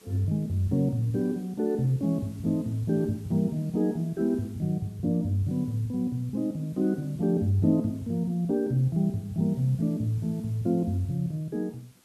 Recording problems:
background hiss; slope -1 dB per octave, SNR 29 dB

